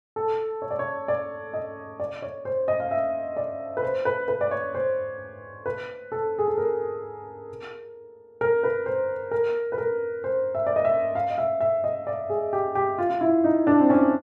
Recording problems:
none

